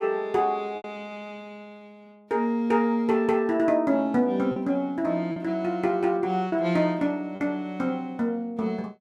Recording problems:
lost packets; 3% of the sound replaced, filled with repeated pitch periods

